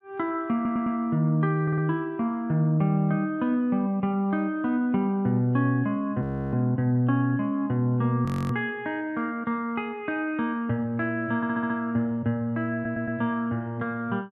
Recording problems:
stutter; 4 times, first at 0.5 s
frozen audio; at 6 s and at 8.5 s

